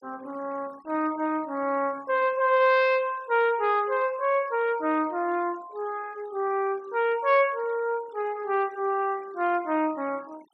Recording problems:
noise reduction artefacts; signal-to-artefact ratio 24 dB

